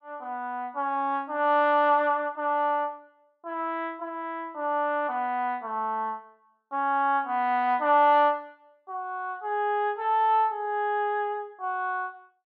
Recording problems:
none

